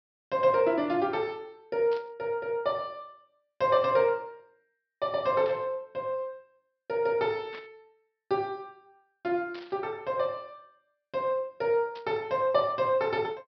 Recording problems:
treble missing; nothing above 5.5 kHz
burst of static; 5 times, first at 2 s; peak -12 dB vs average level

